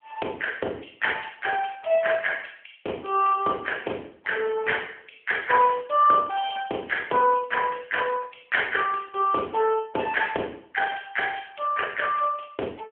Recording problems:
telephone audio; 260 Hz to 3.2 kHz, AMR-NB

